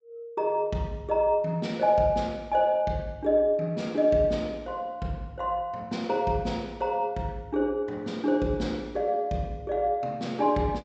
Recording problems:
low-pass filter; nothing above 8 kHz

